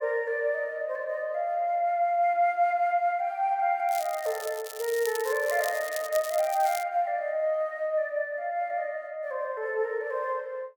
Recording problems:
crackling; from 4 to 7 s; loose cable, SNR 12 dB

